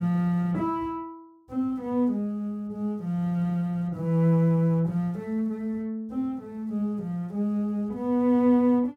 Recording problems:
none

